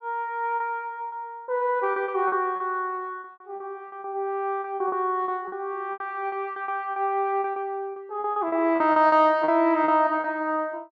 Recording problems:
lost packets; 13% of the sound replaced, filled with repeated pitch periods

